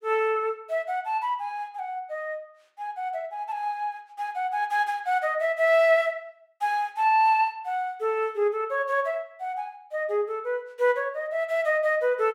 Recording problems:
none

